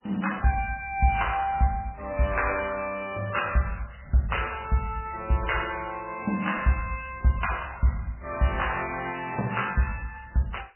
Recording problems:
lossy compression; AAC, then MP3, log-spectral distance 8 dB, nothing above 2.8 kHz

